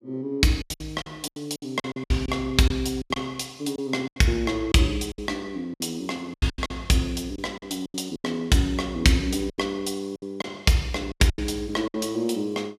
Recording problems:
lost packets; 13% of the sound replaced, filled with silence

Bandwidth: 14.5 kHz